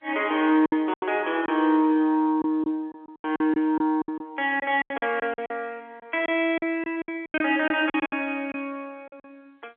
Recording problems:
telephone audio; 260 Hz to 3.4 kHz, G.711
lost packets; 13% of the sound replaced, filled with silence

